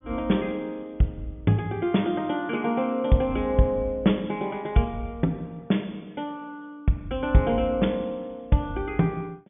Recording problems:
low-pass filter; nothing above 3.5 kHz

